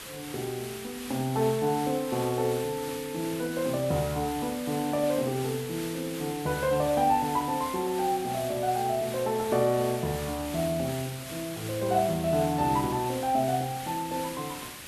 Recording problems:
background hiss; SNR 11 dB

